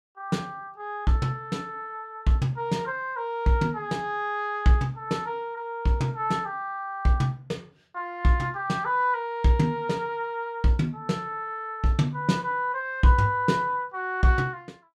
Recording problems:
none

